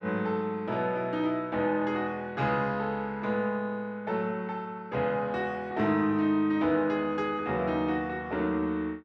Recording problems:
none

